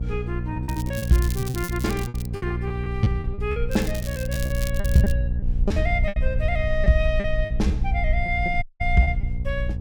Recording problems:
hum; 60 Hz, harmonics up to 540 Hz, SNR 4 dB
rumble; below 64 Hz, SNR 3 dB
packet loss; 12% of the sound replaced, filled with repeated pitch periods
crackling; from 0.5 to 2.5 s and from 3.5 to 5 s; loose cable, SNR 12 dB
audio cutting out; at 8.5 s

